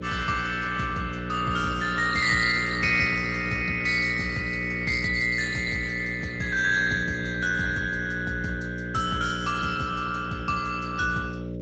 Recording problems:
lossy codec; Speex, log-spectral distance 6 dB, nothing above 7.6 kHz
hum; 60 Hz, harmonics up to 600 Hz, SNR 9 dB

